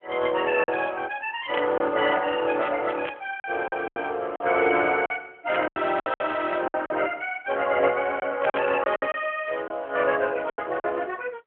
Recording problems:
phone line; 260 Hz to 3.3 kHz, AMR-NB
packet loss; 8% of the sound replaced, filled with silence
static burst; 4 times, first at 1.5 s; peak -1 dB vs average level

